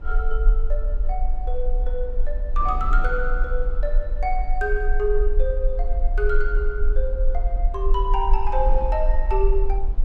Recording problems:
low-frequency rumble; below 40 Hz, strongest tone 20 Hz, SNR -2 dB
wind noise; below 500 Hz, SNR 16 dB

